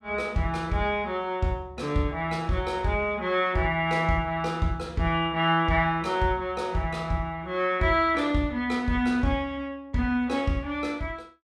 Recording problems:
none

